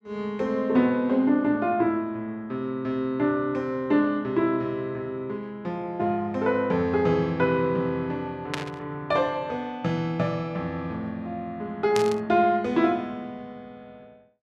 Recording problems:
burst of static; at 8.5 s and at 12 s; peak 0 dB vs average level

